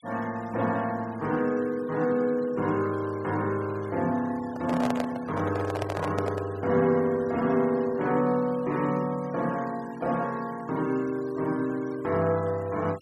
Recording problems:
denoising artefacts; signal-to-artefact ratio 21 dB
handling noise; from 4.5 to 6.5 s; peak +1 dB vs average level

